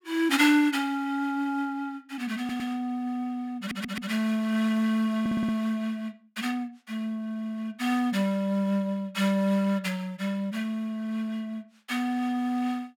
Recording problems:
stutter; at 2.5 s, at 3.5 s and at 5 s

